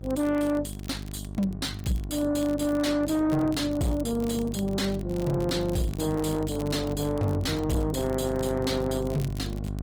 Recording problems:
lossy compression; Opus, then Opus, log-spectral distance 3 dB
distorted audio; soft clipping, signal-to-distortion ratio 10 dB
hum; 50 Hz, harmonics up to 750 Hz, SNR 8 dB
crackling; vinyl, SNR 22 dB

